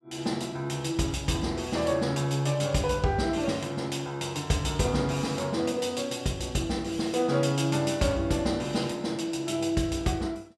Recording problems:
none

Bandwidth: 14.5 kHz